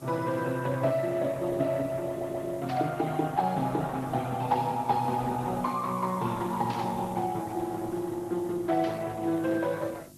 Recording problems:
codec artefacts; Speex, then Opus, log-spectral distance 3 dB
electrical hum; 50 Hz, harmonics up to 450 Hz, SNR 21 dB
hiss; SNR 24 dB
stutter; at 2 s
burst of static; at 2.5 s, at 6.5 s and at 9 s; peak -8 dB vs average level

